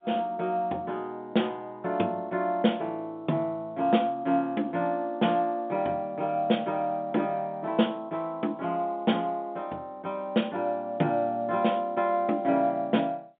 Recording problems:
phone line; 170 Hz to 3.6 kHz, G.711

